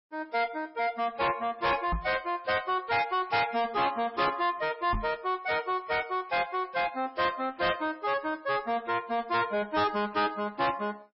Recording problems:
lossy compression; MP3, log-spectral distance 3 dB, nothing above 5.3 kHz
distorted audio; soft clipping, signal-to-distortion ratio 8 dB
knock on the microphone; at 2 s and at 5 s; peak +1 dB vs average level

